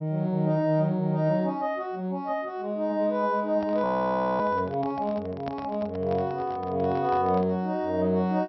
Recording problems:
treble cut off; nothing above 5.6 kHz
microphone handling noise; from 3.5 to 7.5 s; peak -7 dB vs average level
frozen audio; at 4 s for 0.5 s

